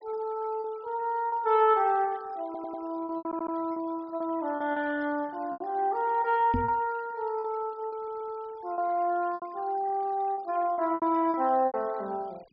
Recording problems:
low-pass filter; nothing above 5.4 kHz
noise reduction artefacts; signal-to-artefact ratio 26 dB
lost packets; 8% of the sound replaced, filled with repeated pitch periods
audio stuttering; at 2.5 s, at 3 s and at 8 s
knock on the microphone; at 6.5 s; peak +3 dB vs average level

